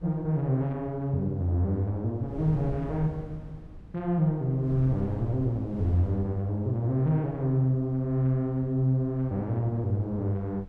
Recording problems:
wind noise; below 150 Hz, SNR 16 dB

